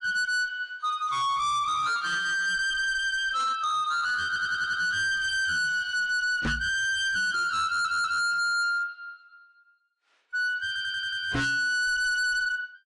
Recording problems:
lossy compression; AAC, log-spectral distance 2 dB, nothing above 10.4 kHz
distorted audio; hard clipping, signal-to-distortion ratio 8 dB
stutter; at 4.5 s, at 7.5 s and at 11 s
knock on the microphone; at 6.5 s and at 11 s; peak +1 dB vs average level

